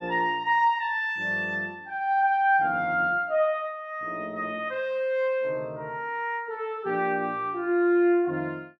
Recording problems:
none

